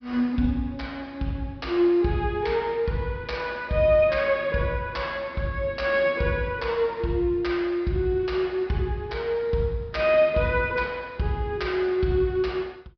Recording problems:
treble cut off; nothing above 5.5 kHz

